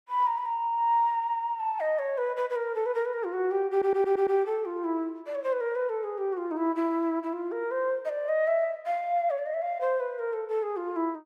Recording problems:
audio stuttering; at 3.5 s

